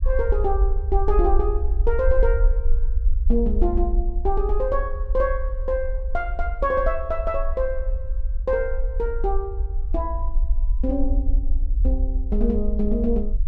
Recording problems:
low-frequency rumble; below 52 Hz, SNR 0 dB

